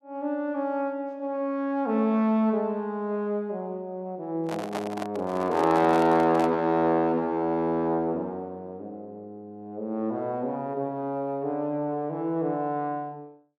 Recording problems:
handling noise; from 4.5 to 6.5 s; peak -2 dB vs average level

